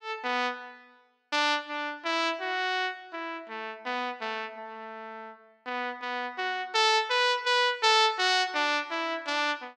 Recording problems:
none

